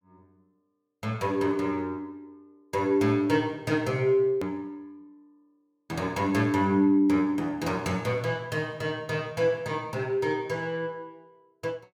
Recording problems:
edit click; at 4.5 s

